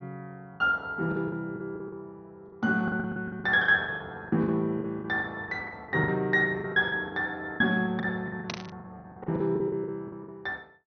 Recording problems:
treble cut off; nothing above 6.2 kHz
lost packets; 17% of the sound replaced, filled with the last packet
static burst; at 8.5 s; peak -1 dB vs average level

